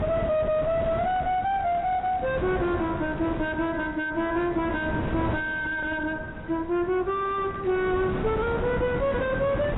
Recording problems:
lossy codec; AAC, log-spectral distance 2 dB, nothing above 3.8 kHz
distortion; soft clipping, signal-to-distortion ratio 6 dB
wind on the microphone; below 490 Hz, SNR 7 dB
crackle; from 0.5 to 4 s and from 7.5 to 8.5 s; loose cable, SNR 22 dB

